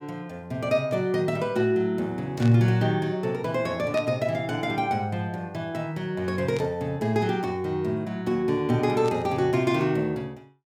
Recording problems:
burst of static; 4 times, first at 2.5 s; peak -9 dB vs average level

